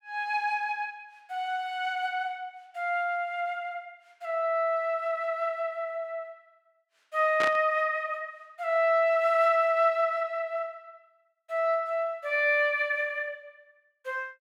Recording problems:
burst of static; at 7.5 s; peak -1 dB vs average level

